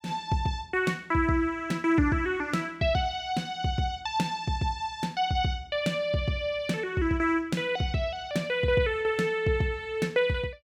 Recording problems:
none

